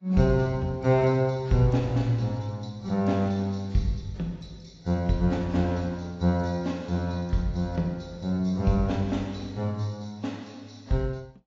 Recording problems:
codec artefacts; AAC, log-spectral distance 2 dB

